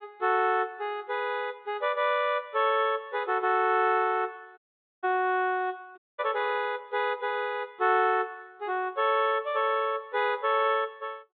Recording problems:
low-pass filter; nothing above 4 kHz
dropout; at 4.5 s and at 6 s

